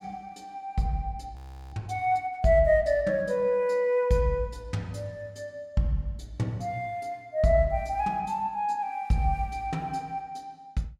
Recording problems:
frozen audio; at 1.5 s

